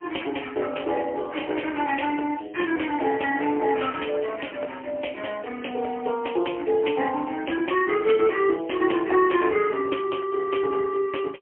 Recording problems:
phone line; 300 Hz to 3.2 kHz, AMR-NB, then MP3

